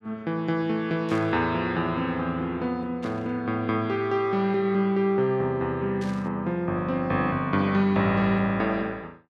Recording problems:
burst of static; at 1 s, at 3 s and at 6 s; peak -14 dB vs average level

